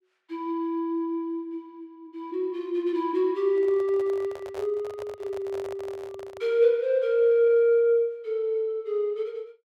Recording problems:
handling noise; from 3.5 to 6.5 s; peak -11 dB vs average level

